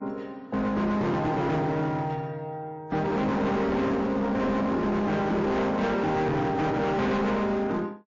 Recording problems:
lossy compression; AAC, then MP3, log-spectral distance 2 dB, nothing above 6.5 kHz
distortion; hard clipping, uneven, signal-to-distortion ratio 7 dB

